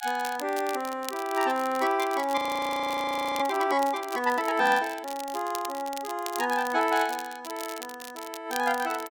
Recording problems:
crackle; vinyl, SNR 14 dB
audio freezing; at 2.5 s for 1 s

